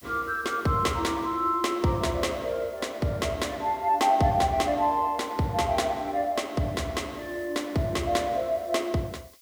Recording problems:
hiss; slope +4 dB per octave, SNR 27 dB

